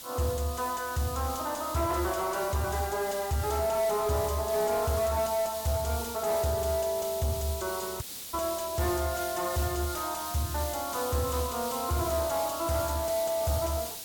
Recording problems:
distorted audio; soft clipping, signal-to-distortion ratio 11 dB
background hiss; SNR 8 dB
audio cutting out; at 8 s

